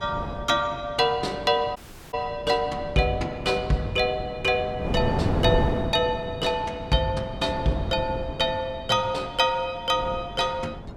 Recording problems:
wind on the microphone; below 420 Hz, SNR 7 dB
dropout; at 2 s

